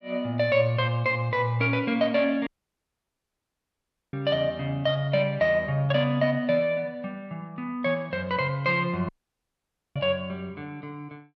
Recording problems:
audio cutting out; at 2.5 s for 1.5 s and at 9 s for 1 s

